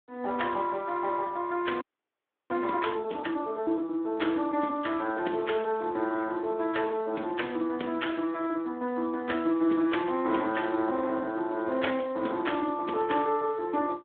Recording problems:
phone line; 220 Hz to 3.6 kHz, Speex
audio freezing; at 2 s for 0.5 s

